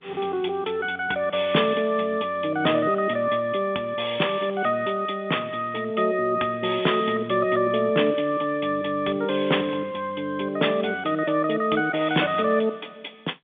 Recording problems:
telephone audio; 240 Hz to 3.6 kHz, G.711

